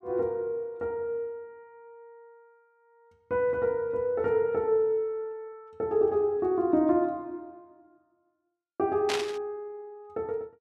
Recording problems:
static burst; at 9 s; peak +1 dB vs average level

